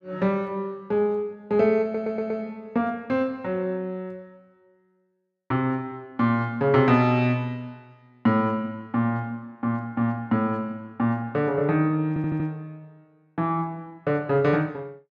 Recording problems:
stutter; at 2 s and at 12 s

